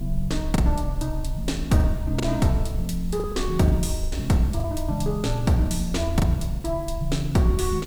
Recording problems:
background hiss; SNR 25 dB
low-frequency rumble; below 52 Hz, strongest tone 28 Hz, SNR 9 dB
lost packets; 6% of the sound replaced, filled with the last packet

